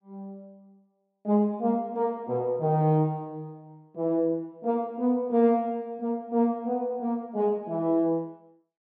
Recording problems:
none

